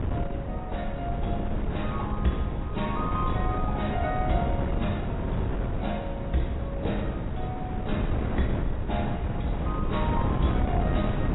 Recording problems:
lossy codec; AAC, log-spectral distance 2 dB, nothing above 3.9 kHz
wind on the microphone; below 240 Hz, SNR -3 dB

